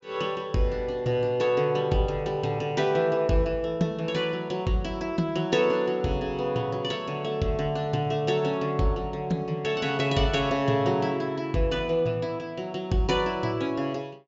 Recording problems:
treble missing; nothing above 7.3 kHz

